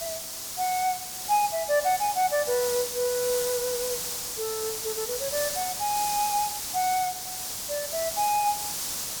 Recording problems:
hiss; SNR 2 dB

